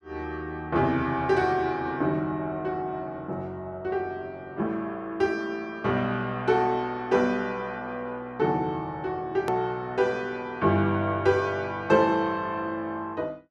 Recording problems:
edit click; at 9.5 s

